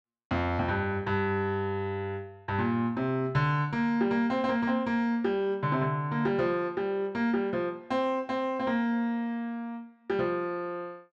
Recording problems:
none

